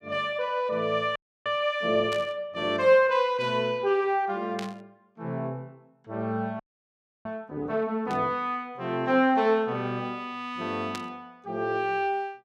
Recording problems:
frozen audio; at 1 s and at 6.5 s for 0.5 s
static burst; 4 times, first at 2 s; peak -6 dB vs average level

